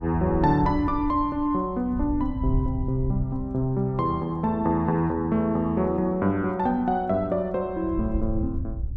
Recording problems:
wind on the microphone; below 88 Hz, SNR 8 dB

